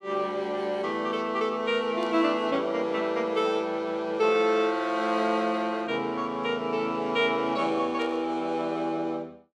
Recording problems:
burst of static; at 2 s and at 8 s; peak -15 dB vs average level

